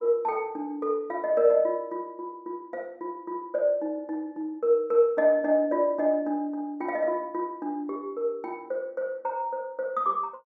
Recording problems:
none

